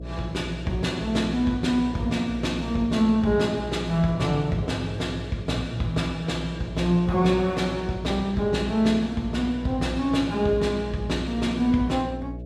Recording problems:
hum; 60 Hz, harmonics up to 660 Hz, SNR 12 dB

